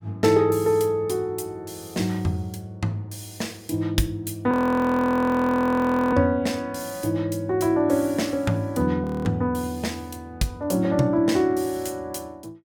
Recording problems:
frozen audio; at 4.5 s for 1.5 s and at 9 s

